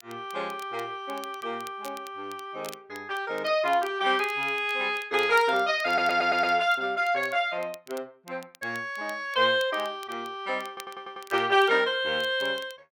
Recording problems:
crackle; vinyl, SNR 23 dB
stutter; at 6 s and at 11 s

